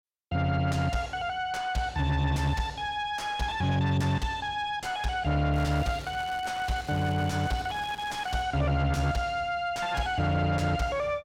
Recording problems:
distortion; soft clipping, signal-to-distortion ratio 7 dB
crackling; from 5.5 to 8.5 s; loose cable, SNR 18 dB

